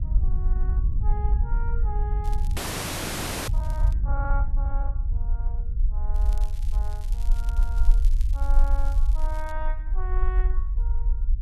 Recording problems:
low-frequency rumble; below 48 Hz, SNR -11 dB
wind noise; below 60 Hz, SNR -10 dB
crackling; from 2 to 4 s and from 6 to 9.5 s; loose cable, SNR 12 dB
frozen audio; at 2.5 s for 1 s

